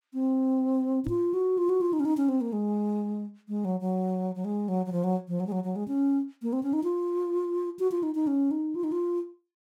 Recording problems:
microphone thump; at 1 s; peak -4 dB vs average level

